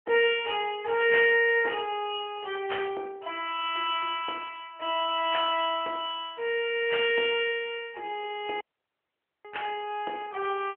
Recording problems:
telephone audio; 280 Hz to 3.2 kHz, AMR-NB
dropout; at 8.5 s for 1 s

